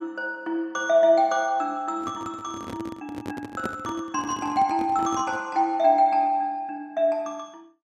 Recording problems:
handling noise; from 2 to 5.5 s; peak -3 dB vs average level

